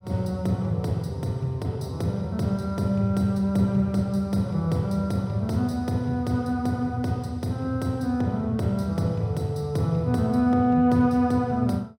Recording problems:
none

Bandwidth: 16.5 kHz